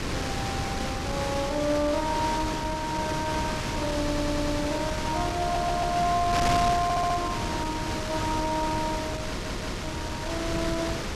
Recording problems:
wind on the microphone; below 2.5 kHz, SNR 2 dB
audio stuttering; 4 times, first at 4 s

